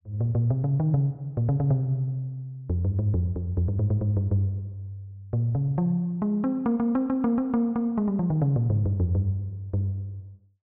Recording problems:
none

